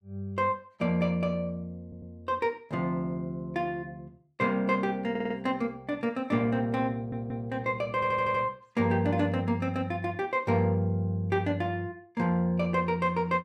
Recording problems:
audio stuttering; 4 times, first at 2 s

